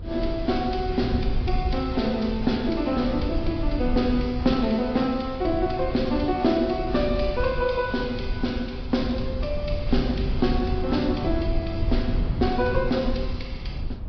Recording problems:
treble missing; nothing above 5.2 kHz
codec artefacts; Vorbis, then MP3, log-spectral distance 3 dB
wind noise; below 100 Hz, SNR 6 dB

